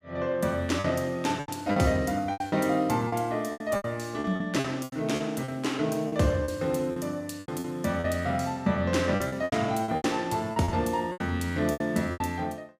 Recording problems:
packet loss; 13% of the sound replaced, filled with repeated pitch periods

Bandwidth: 15 kHz